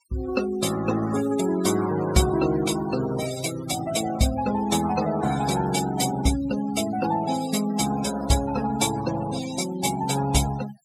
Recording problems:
denoising artefacts; signal-to-artefact ratio 11 dB

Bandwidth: 17 kHz